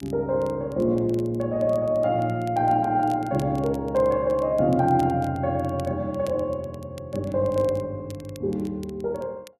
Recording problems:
crackling; vinyl, SNR 27 dB

